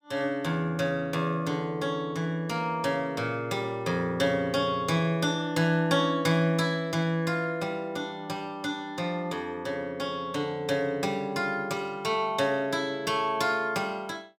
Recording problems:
none

